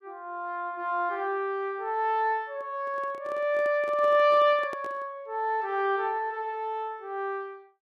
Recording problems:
microphone handling noise; from 2.5 to 5 s; peak -9 dB vs average level

